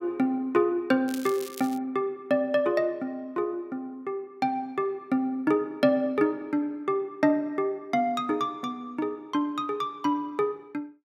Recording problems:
crackle; at 1 s; loose cable, SNR 15 dB

